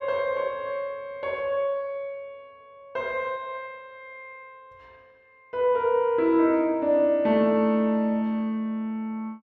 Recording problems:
none

